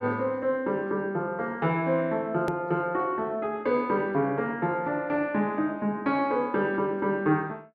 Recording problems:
edit click; at 2.5 s

